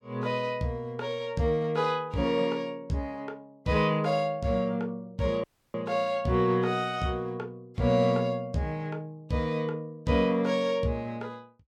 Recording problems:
audio cutting out; at 5.5 s

